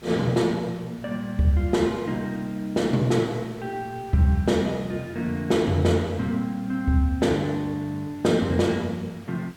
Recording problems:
background hiss; slope -3 dB per octave, SNR 24 dB

